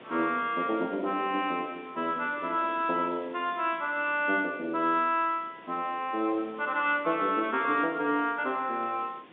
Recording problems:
phone line; 260 Hz to 3.7 kHz, G.711
hiss; SNR 22 dB

